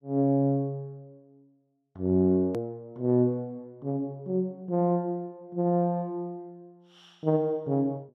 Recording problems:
hard cut with a click; at 2.5 s

